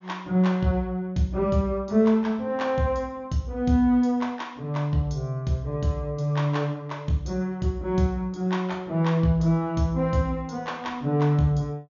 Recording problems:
low-pass filter; nothing above 7 kHz

